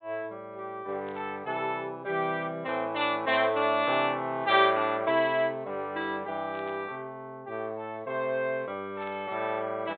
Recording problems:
low-pass filter; nothing above 4 kHz
static burst; at 1 s, at 6.5 s and at 9 s; peak -17 dB vs average level

